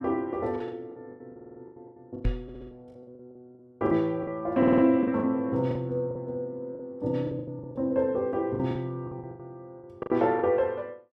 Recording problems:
packet loss; 16% of the sound replaced, filled with the last packet
audio stuttering; at 1.5 s, at 2.5 s and at 4.5 s
microphone bump; at 2.5 s; peak +3 dB vs average level

